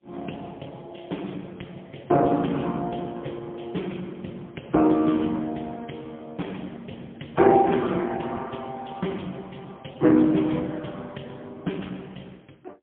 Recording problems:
phone line; 110 Hz to 3.4 kHz, AMR-NB, then MP3

